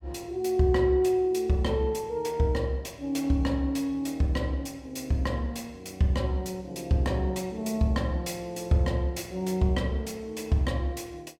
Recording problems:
none

